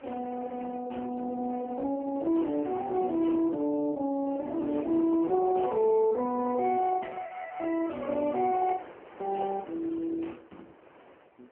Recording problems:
telephone audio; 220 Hz to 2.2 kHz, AMR-NB
wind on the microphone; below 1.2 kHz, SNR 21 dB

